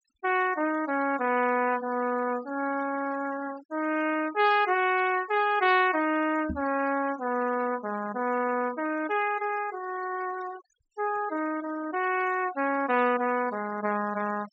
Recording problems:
treble missing; nothing above 8 kHz
denoising artefacts; signal-to-artefact ratio 17 dB
microphone bump; at 6.5 s; peak -3 dB vs average level

